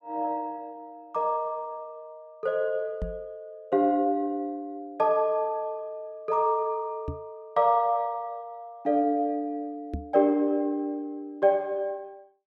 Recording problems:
knock on the microphone; at 3 s, at 7 s and at 10 s; peak -2 dB vs average level

